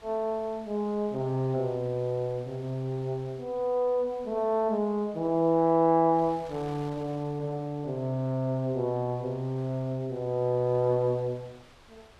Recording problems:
wind on the microphone; below 3 kHz, SNR 25 dB

